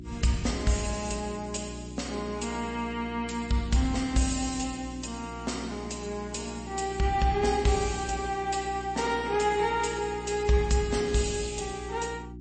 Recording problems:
lossy codec; MP3, log-spectral distance 6 dB, nothing above 8.2 kHz
hum; 60 Hz, harmonics up to 360 Hz, SNR 12 dB

